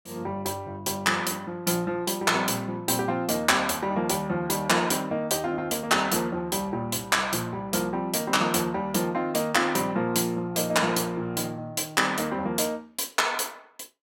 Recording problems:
none

